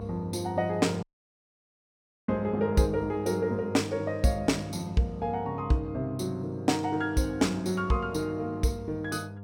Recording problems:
electrical hum; 50 Hz, harmonics up to 1 kHz, SNR 12 dB
dropout; at 1 s for 1 s

